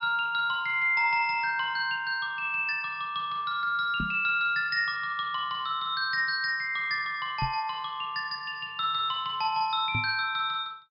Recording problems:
treble missing; nothing above 5.5 kHz
microphone bump; at 4 s, at 7.5 s and at 10 s; peak -2 dB vs average level

